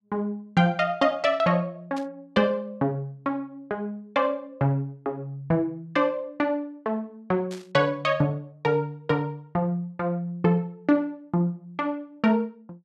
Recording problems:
static burst; at 2 s and at 7.5 s; peak -12 dB vs average level

